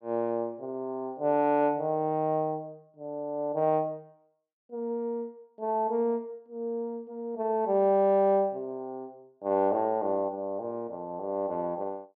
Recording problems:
none

